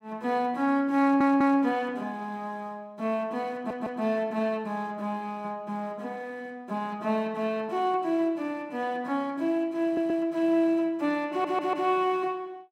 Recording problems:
stutter; 4 times, first at 1 s

